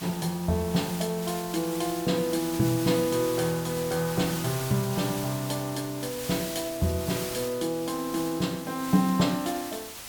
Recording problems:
background hiss; slope 0 dB per octave, SNR 9 dB

